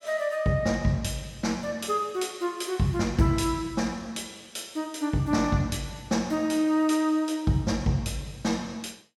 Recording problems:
none

